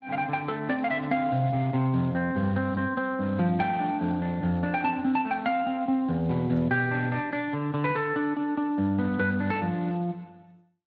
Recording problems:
lossy compression; Speex, log-spectral distance 2 dB

